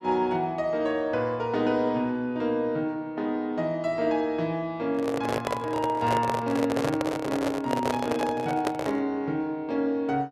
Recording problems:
microphone handling noise; from 5 to 9 s; peak +3 dB vs average level

